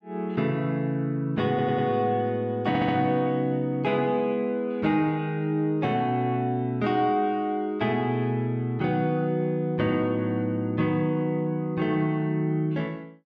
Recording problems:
stutter; at 1.5 s and at 2.5 s

